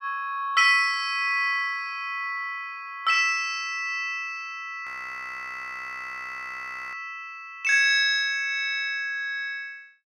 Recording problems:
frozen audio; at 5 s for 2 s

